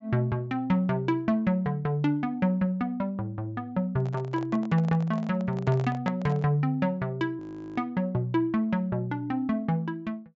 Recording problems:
low-pass filter; nothing above 8 kHz
microphone handling noise; from 4 to 6.5 s; peak -6 dB vs average level
frozen audio; at 7.5 s

